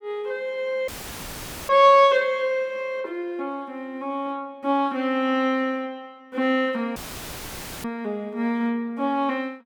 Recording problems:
dropout; at 1 s for 1 s and at 7 s for 1 s; filled with static

